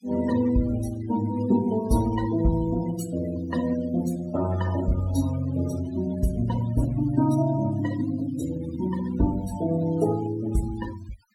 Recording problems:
noise reduction artefacts; signal-to-artefact ratio 17 dB

